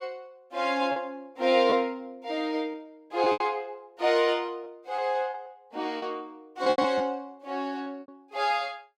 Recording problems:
packet loss; 8% of the sound replaced, filled with repeated pitch periods

